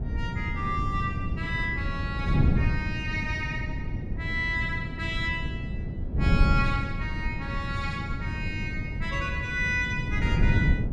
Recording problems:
wind noise; below 160 Hz, SNR -1 dB

